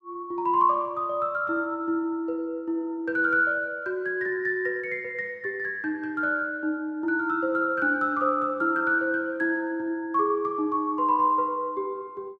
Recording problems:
none

